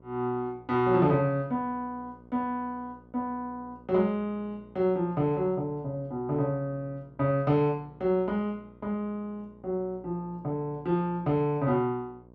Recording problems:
electrical hum; 60 Hz, harmonics up to 1.1 kHz, SNR 24 dB

